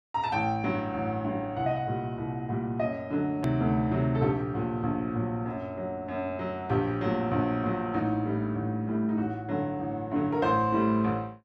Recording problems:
click at an edit; at 3.5 s

